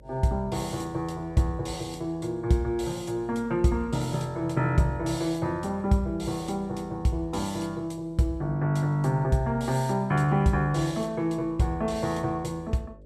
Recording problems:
electrical hum; 50 Hz, harmonics up to 600 Hz, SNR 25 dB

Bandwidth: 14.5 kHz